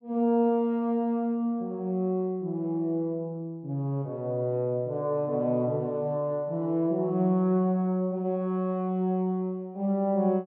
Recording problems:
none

